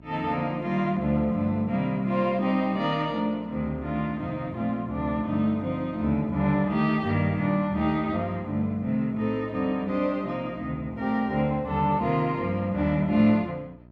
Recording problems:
hum; 60 Hz, harmonics up to 1 kHz, SNR 24 dB

